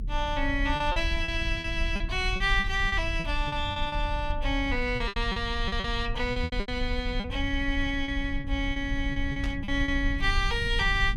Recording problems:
low-frequency rumble; below 66 Hz, SNR 5 dB
lost packets; 11% of the sound replaced, filled with repeated pitch periods
burst of static; at 9.5 s; peak -7 dB vs average level

